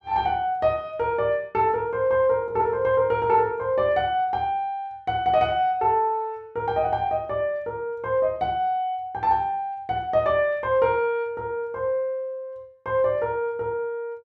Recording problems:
none

